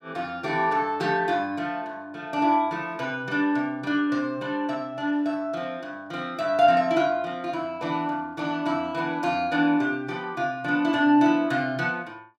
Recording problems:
none

